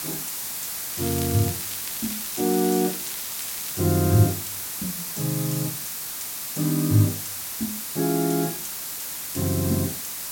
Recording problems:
background hiss; slope +1 dB per octave, SNR 4 dB
crackling; from 1 to 3.5 s; loose cable, SNR 13 dB

